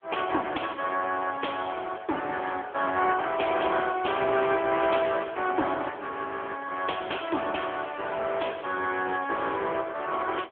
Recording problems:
telephone audio; 320 Hz to 3.4 kHz, AMR-NB

